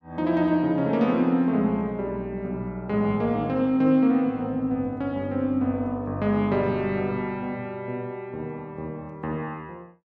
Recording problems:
none

